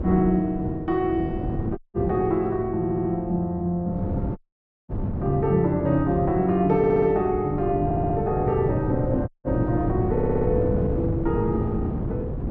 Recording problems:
treble missing; nothing above 7.4 kHz
wind on the microphone; below 260 Hz, SNR 6 dB
dropout; at 2 s, at 4.5 s for 0.5 s and at 9.5 s
audio stuttering; 4 times, first at 3 s

